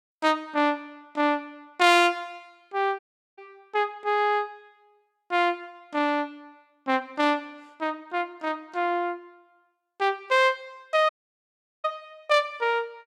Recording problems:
dropout; at 3 s and at 11 s for 1 s

